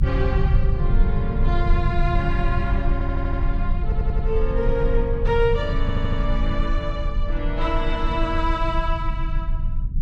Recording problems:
low-frequency rumble; below 70 Hz, strongest tone 24 Hz, SNR -2 dB
audio stuttering; at 3 s, at 4 s and at 6 s

